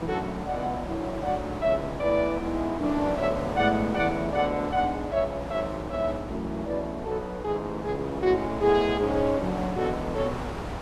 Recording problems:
electrical hum; 60 Hz, harmonics up to 360 Hz, SNR 17 dB
wind on the microphone; below 1.1 kHz, SNR 10 dB

